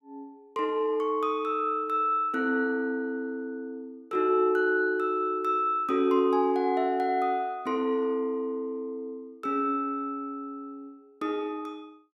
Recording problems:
none

